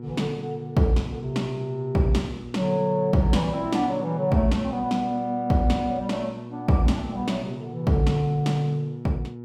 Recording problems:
hum; 60 Hz, harmonics up to 960 Hz, SNR 13 dB

